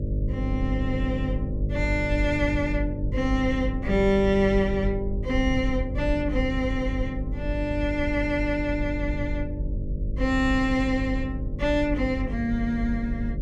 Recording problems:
electrical hum; 50 Hz, harmonics up to 600 Hz, SNR 6 dB
low-frequency rumble; below 66 Hz, SNR 6 dB

